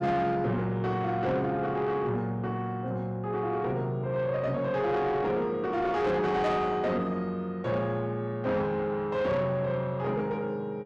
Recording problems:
distortion; soft clipping, signal-to-distortion ratio 11 dB

